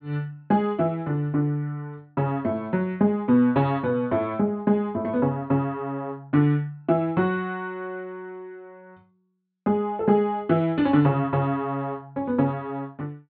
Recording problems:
treble cut off; nothing above 4.5 kHz

